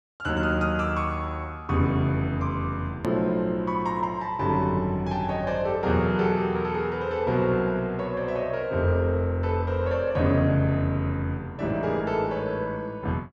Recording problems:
click at an edit; at 3 s

